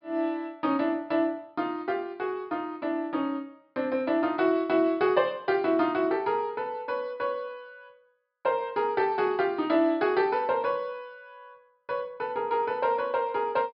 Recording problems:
treble cut off; nothing above 5.5 kHz

